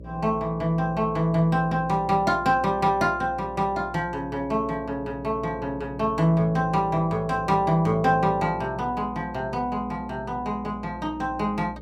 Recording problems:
hum; 60 Hz, harmonics up to 600 Hz, SNR 17 dB

